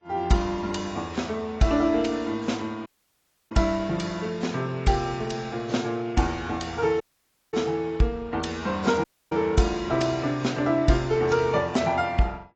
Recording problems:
codec artefacts; AAC, log-spectral distance 3 dB, nothing above 7.3 kHz
audio cutting out; at 3 s for 0.5 s, at 7 s for 0.5 s and at 9 s

